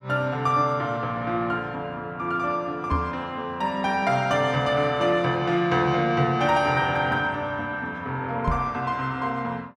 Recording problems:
knock on the microphone; at 3 s and at 8.5 s; peak +2 dB vs average level

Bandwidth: 14.5 kHz